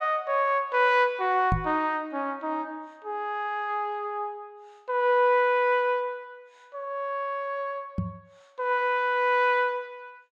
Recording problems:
knock on the microphone; at 1.5 s and at 8 s; peak +3 dB vs average level

